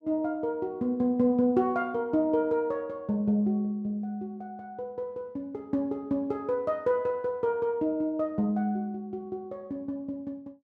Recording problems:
none

